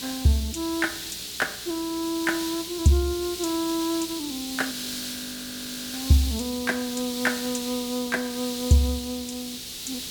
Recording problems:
hum; 60 Hz, harmonics up to 420 Hz, SNR 28 dB
hiss; SNR 6 dB
frozen audio; at 4.5 s for 1 s

